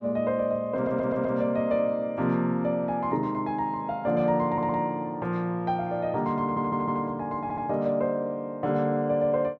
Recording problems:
stutter; 4 times, first at 1 s

